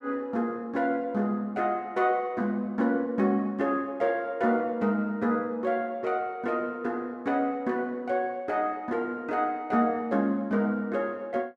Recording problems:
none

